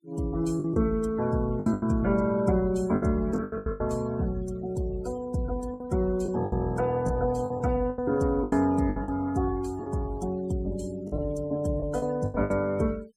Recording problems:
noise reduction artefacts; signal-to-artefact ratio 22 dB
packet loss; 10% of the sound replaced, filled with the last packet

